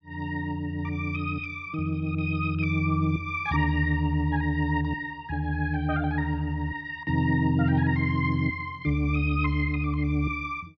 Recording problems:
none

